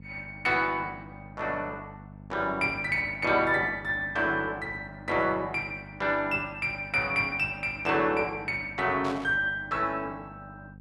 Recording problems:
hum; 50 Hz, harmonics up to 550 Hz, SNR 19 dB
static burst; at 9 s; peak -9 dB vs average level

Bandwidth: 12.5 kHz